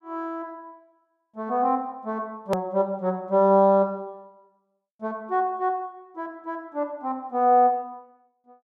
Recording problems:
hard cut with a click; at 2.5 s

